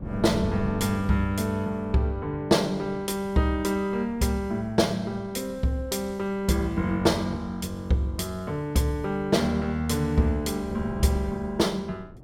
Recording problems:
wind noise; below 240 Hz, SNR 15 dB

